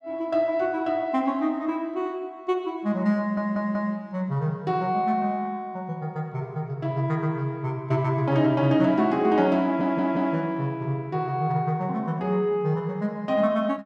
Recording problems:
stutter; at 3 s and at 9.5 s

